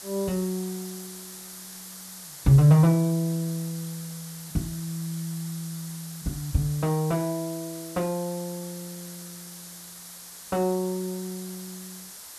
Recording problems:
hiss; SNR 13 dB

